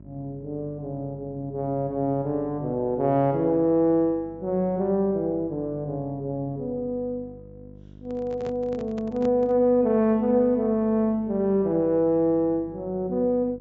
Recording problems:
low-pass filter; nothing above 8 kHz
electrical hum; 50 Hz, harmonics up to 700 Hz, SNR 21 dB
microphone handling noise; from 8 to 9.5 s; peak -9 dB vs average level

